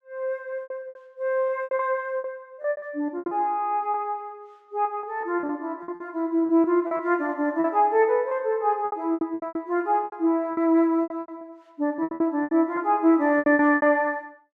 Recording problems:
lost packets; 16% of the sound replaced, filled with repeated pitch periods

